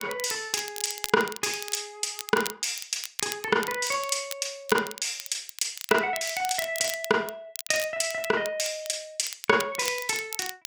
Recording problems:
crackling; vinyl, SNR 10 dB

